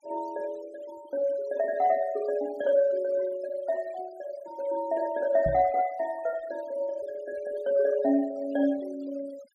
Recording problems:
denoising artefacts; signal-to-artefact ratio 22 dB
knock on the microphone; at 5.5 s; peak -2 dB vs average level

